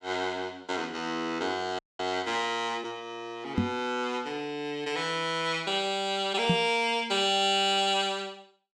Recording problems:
frozen audio; at 2 s
knock on the microphone; at 3.5 s and at 6.5 s; peak +6 dB vs average level

